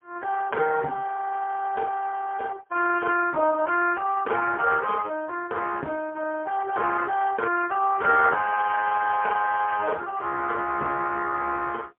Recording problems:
phone line; 260 Hz to 2.4 kHz, AMR-NB, then MP3

